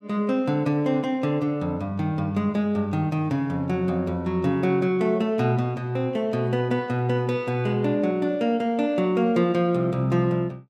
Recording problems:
none

